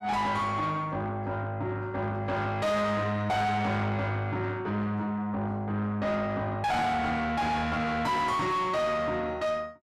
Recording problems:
distortion; soft clipping, signal-to-distortion ratio 5 dB

